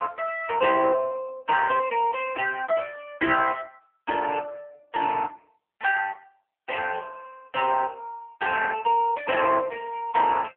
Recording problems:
telephone audio; 340 Hz to 3.1 kHz, AMR-NB

